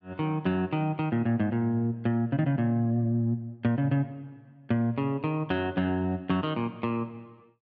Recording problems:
none

